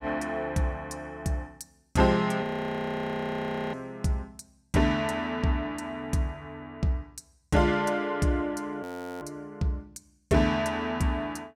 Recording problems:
audio freezing; at 2.5 s for 1.5 s and at 9 s

